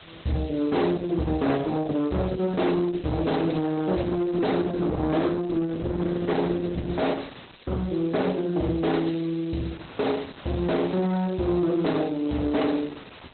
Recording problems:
lossy compression; Opus, log-spectral distance 11 dB, nothing above 4.1 kHz
distorted audio; hard clipping, signal-to-distortion ratio 11 dB
hiss; SNR 24 dB
wind noise; below 1.5 kHz, SNR 22 dB

